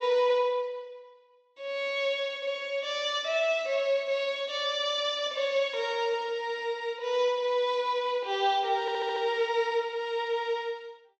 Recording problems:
treble cut off; nothing above 8 kHz
stutter; at 9 s

